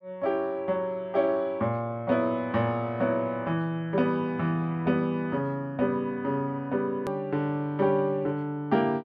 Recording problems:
click at an edit; at 7 s

